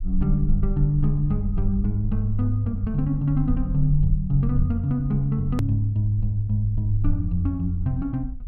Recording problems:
low-frequency rumble; below 48 Hz, SNR 8 dB
click at an edit; at 5.5 s

